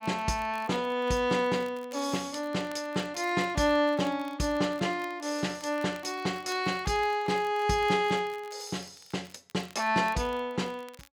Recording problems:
crackle; vinyl, SNR 25 dB

